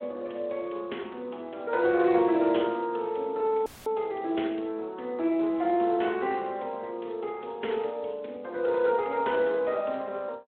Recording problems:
phone line; 260 Hz to 3.9 kHz, Speex
dropout; at 3.5 s; filled with static

